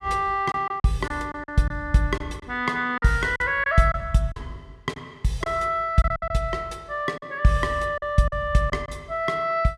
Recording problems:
packet loss; 7% of the sound replaced, filled with silence

